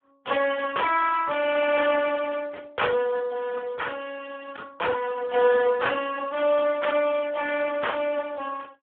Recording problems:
phone line; 320 Hz to 3.2 kHz, Speex

